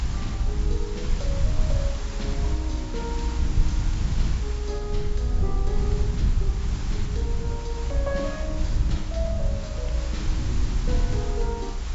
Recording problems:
treble cut off; nothing above 8 kHz
hum; 60 Hz, harmonics up to 1.1 kHz, SNR 26 dB
hiss; slope -2 dB per octave, SNR 6 dB
low-frequency rumble; below 74 Hz, SNR -7 dB

